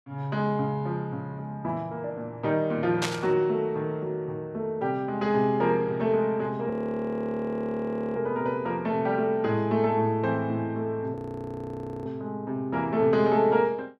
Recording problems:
burst of static; at 3 s; peak +3 dB vs average level
frozen audio; at 6.5 s for 1.5 s and at 11 s for 1 s

